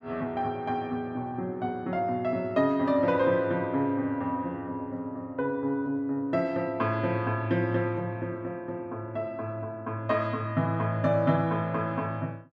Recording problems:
none

